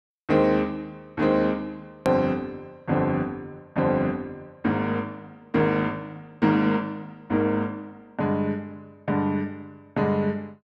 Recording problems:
click at an edit; at 2 s

